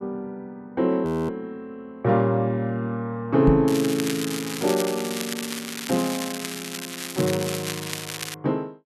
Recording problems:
audio freezing; at 1 s
knock on the microphone; at 3.5 s; peak +7 dB vs average level
crackling; from 3.5 to 8.5 s; loose cable, SNR 7 dB

